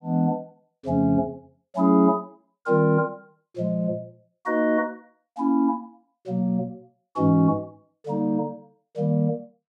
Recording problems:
none

